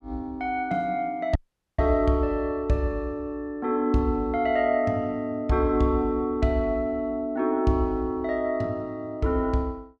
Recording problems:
dropout; at 1.5 s

